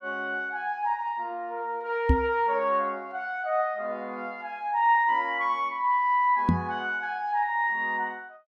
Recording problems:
microphone bump; at 2 s and at 6.5 s; peak +8 dB vs average level

